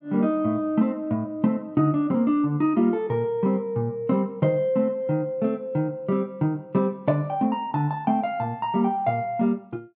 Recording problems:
none

